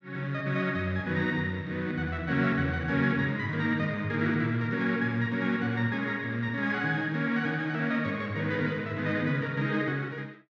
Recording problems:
none

